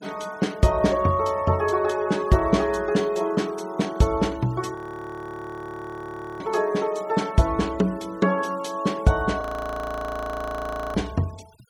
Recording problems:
noise reduction artefacts; signal-to-artefact ratio 24 dB
audio freezing; at 5 s for 1.5 s and at 9.5 s for 1.5 s

